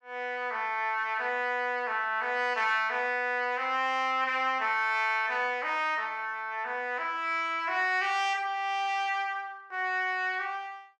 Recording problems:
none

